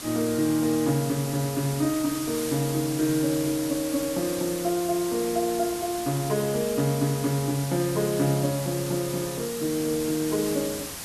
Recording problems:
hiss; slope -1 dB per octave, SNR 8 dB

